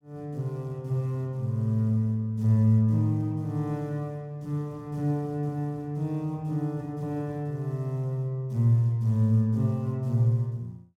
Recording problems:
none

